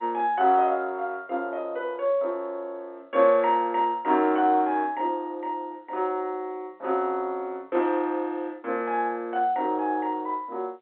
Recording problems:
telephone audio; 280 Hz to 3.8 kHz, G.711

